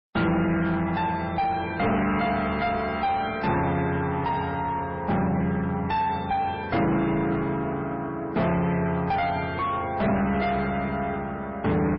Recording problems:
lossy compression; MP3, log-spectral distance 2 dB, nothing above 5.3 kHz
distortion; soft clipping, signal-to-distortion ratio 5 dB

